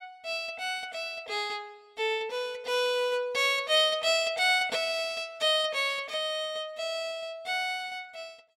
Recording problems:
none

